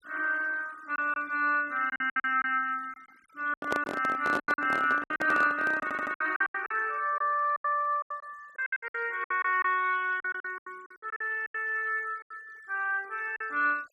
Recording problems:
noise reduction artefacts; signal-to-artefact ratio 26 dB
lost packets; 14% of the sound replaced, filled with silence
microphone handling noise; from 3.5 to 6 s; peak +1 dB vs average level
stutter; at 6 s

